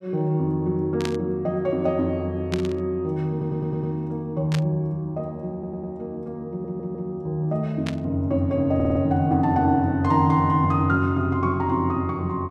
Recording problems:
burst of static; 4 times, first at 1 s; peak -3 dB vs average level
stutter; 4 times, first at 3.5 s

